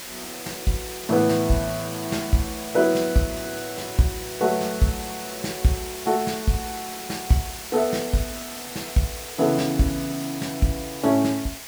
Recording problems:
background hiss; slope 0 dB per octave, SNR 10 dB

